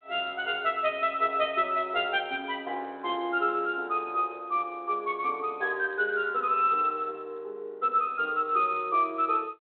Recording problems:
phone line; 320 Hz to 3.3 kHz, G.726

